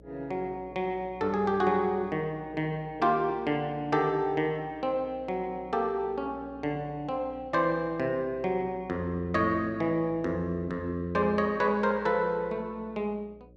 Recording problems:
hum; 60 Hz, harmonics up to 600 Hz, SNR 24 dB

